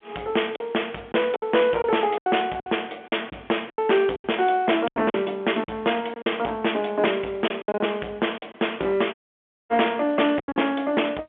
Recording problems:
telephone audio; 260 Hz to 3.4 kHz, G.711
distortion; hard clipping, signal-to-distortion ratio 11 dB
packet loss; 9% of the sound replaced, filled with silence
audio cutting out; at 9 s for 0.5 s

